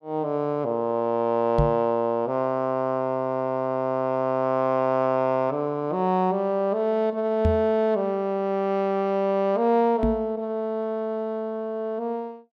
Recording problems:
microphone thump; at 1.5 s, at 7.5 s and at 10 s; peak +4 dB vs average level

